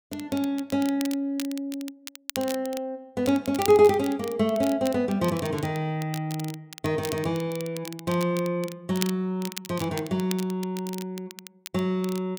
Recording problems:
crackle; vinyl, SNR 13 dB

